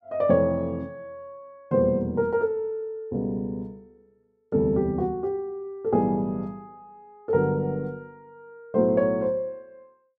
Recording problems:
none

